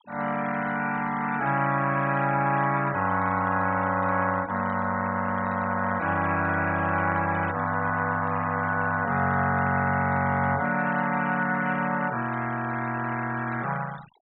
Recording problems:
treble cut off; nothing above 3.9 kHz
denoising artefacts; signal-to-artefact ratio 17 dB

